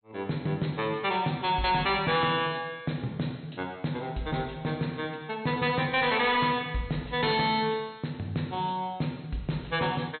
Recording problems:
treble cut off; nothing above 4.2 kHz
distortion; hard clipping, signal-to-distortion ratio 11 dB

